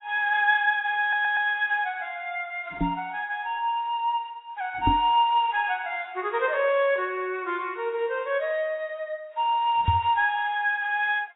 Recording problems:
lossy compression; AAC, log-spectral distance 2 dB, nothing above 3.4 kHz
audio stuttering; at 1 s
microphone thump; at 3 s, at 5 s and at 10 s; peak +4 dB vs average level

